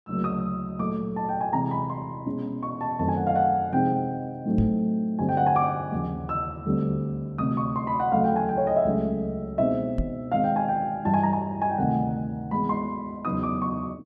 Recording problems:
microphone thump; at 4.5 s and at 10 s; peak +2 dB vs average level

